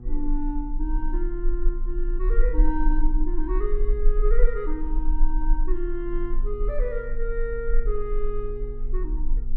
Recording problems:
hum; 60 Hz, harmonics up to 720 Hz, SNR 13 dB
low-frequency rumble; below 34 Hz, strongest tone 20 Hz, SNR -4 dB

